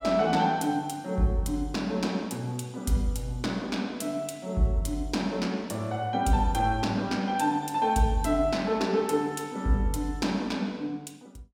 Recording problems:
none

